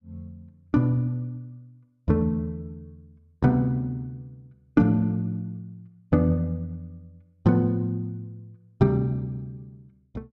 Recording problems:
none

